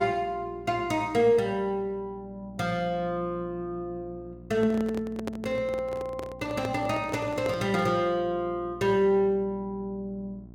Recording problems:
hum; 60 Hz, harmonics up to 720 Hz, SNR 20 dB
microphone handling noise; from 4.5 to 8 s; peak -2 dB vs average level

